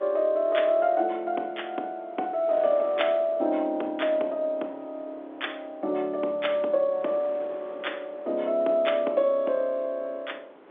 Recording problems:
telephone audio; 260 Hz to 3.6 kHz, G.711
wind on the microphone; below 940 Hz, SNR 21 dB

